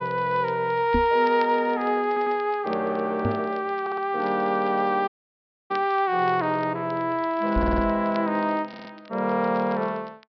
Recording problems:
low-pass filter; nothing above 5.5 kHz
crackling; vinyl, SNR 26 dB
microphone thump; at 1 s, at 3.5 s and at 7.5 s; peak +2 dB vs average level
audio stuttering; 4 times, first at 2 s
audio cutting out; at 5 s for 0.5 s

